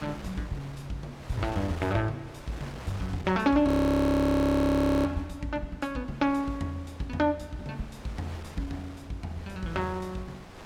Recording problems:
wind on the microphone; below 1.6 kHz, SNR 16 dB
frozen audio; at 3.5 s for 1.5 s

